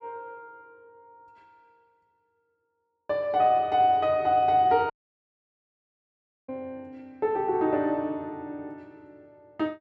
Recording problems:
audio cutting out; at 5 s for 1.5 s

